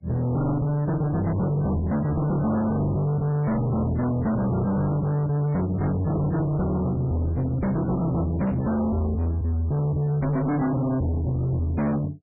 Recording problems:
codec artefacts; MP3, log-spectral distance 2 dB, nothing above 11.3 kHz
distorted audio; hard clipping, signal-to-distortion ratio 6 dB

